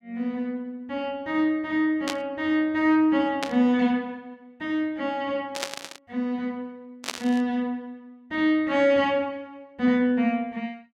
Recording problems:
static burst; 4 times, first at 2 s; peak +1 dB vs average level

